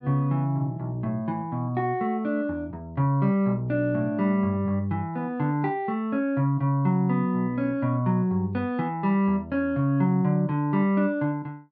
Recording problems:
none

